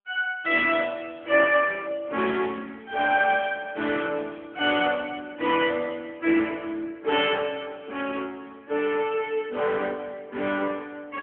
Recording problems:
phone line; 240 Hz to 3.4 kHz, AMR-NB

